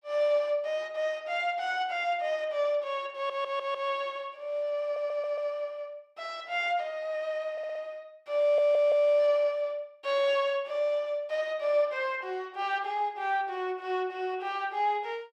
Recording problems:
stutter; 4 times, first at 3 s

